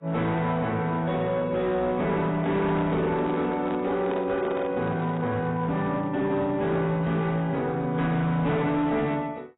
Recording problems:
lossy compression; AAC, log-spectral distance 2 dB, nothing above 3.8 kHz
distortion; hard clipping, signal-to-distortion ratio 11 dB
handling noise; from 2 to 5.5 s; peak -5 dB vs average level

